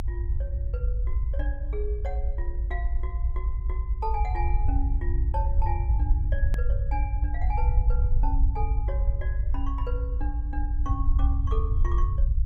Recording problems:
rumble; below 62 Hz, SNR -10 dB
hard cut with a click; at 6.5 s

